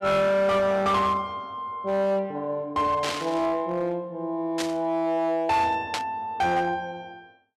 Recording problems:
distorted audio; hard clipping, signal-to-distortion ratio 11 dB
static burst; at 3 s, at 4.5 s and at 6 s; peak +1 dB vs average level

